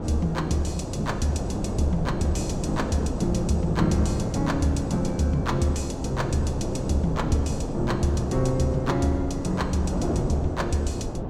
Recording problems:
wind noise; below 400 Hz, SNR 4 dB

